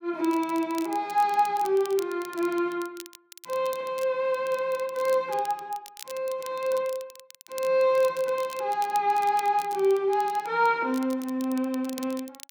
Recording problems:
crackle; vinyl, SNR 19 dB

